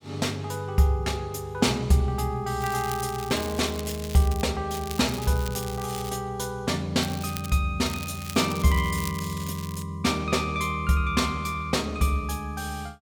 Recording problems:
crackling; 4 times, first at 2.5 s; loose cable, SNR 13 dB

